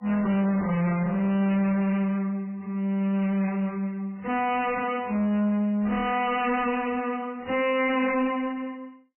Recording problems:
lossy compression; AAC, then MP3, log-spectral distance 3 dB, nothing above 2.4 kHz
distortion; soft clipping, signal-to-distortion ratio 7 dB

